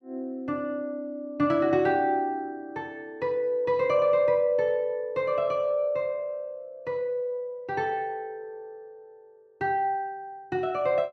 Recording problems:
none

